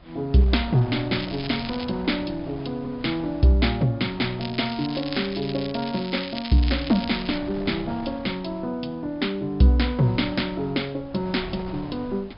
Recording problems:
treble missing; nothing above 5.5 kHz
wind noise; below 760 Hz, SNR 17 dB
crackle; at 1 s and from 4.5 to 7.5 s; loose cable, SNR 12 dB

